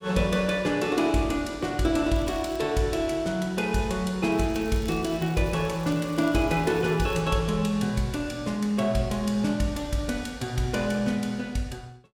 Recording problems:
crackle; at 2 s and from 4.5 to 7 s; loose cable, SNR 24 dB

